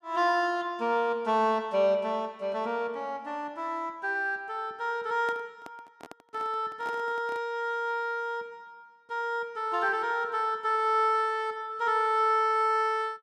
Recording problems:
handling noise; from 5 to 7.5 s; peak -9 dB vs average level

